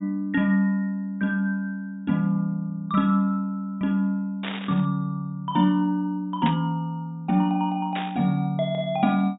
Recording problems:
treble missing; nothing above 4 kHz
burst of static; at 4.5 s, at 6.5 s and at 8 s; peak -3 dB vs average level

